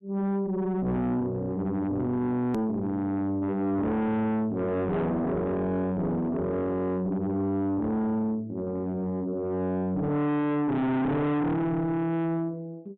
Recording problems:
treble cut off; nothing above 4 kHz
distorted audio; soft clipping, signal-to-distortion ratio 5 dB
click at an edit; at 2.5 s

